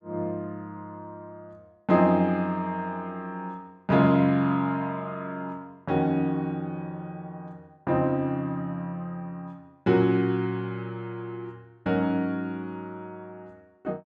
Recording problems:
none

